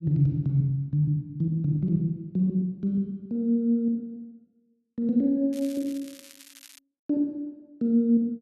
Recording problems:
crackle; from 5.5 to 7 s; loose cable, SNR 21 dB

